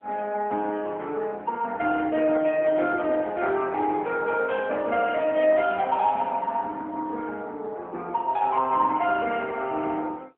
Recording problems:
phone line; 260 Hz to 3.2 kHz, AMR-NB

